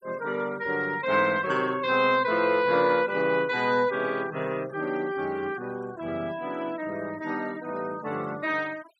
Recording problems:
denoising artefacts; signal-to-artefact ratio 23 dB

